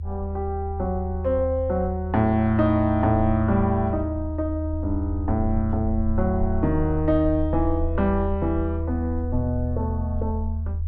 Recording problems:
rumble; below 82 Hz, strongest tone 80 Hz, SNR 4 dB

